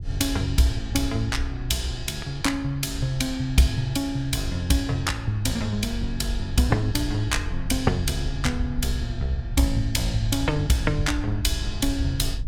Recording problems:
wind noise; below 74 Hz, SNR 9 dB

